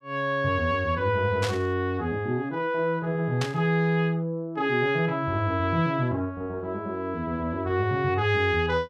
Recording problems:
static burst; at 1.5 s and at 3.5 s; peak -2 dB vs average level

